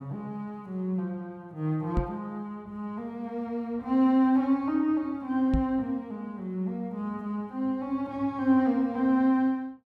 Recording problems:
microphone thump; at 2 s and at 5.5 s; peak +4 dB vs average level

